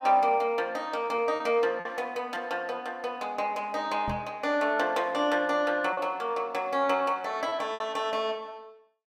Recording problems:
lost packets; 3% of the sound replaced, filled with repeated pitch periods
knock on the microphone; at 4 s; peak -4 dB vs average level

